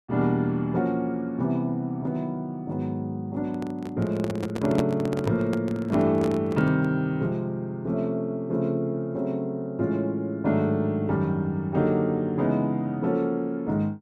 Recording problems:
handling noise; from 3.5 to 7 s; peak +4 dB vs average level

